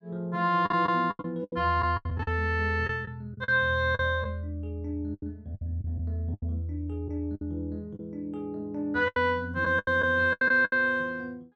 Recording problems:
lost packets; 11% of the sound replaced, filled with the last packet

